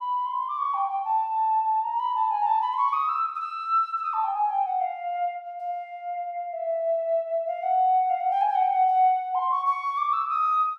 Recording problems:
none

